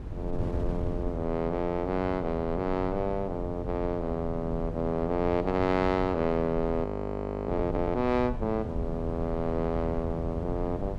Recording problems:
wind on the microphone; below 140 Hz, SNR 7 dB
audio freezing; at 7 s for 0.5 s

